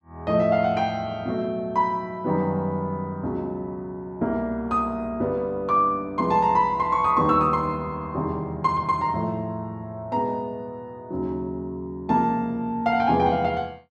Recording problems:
none

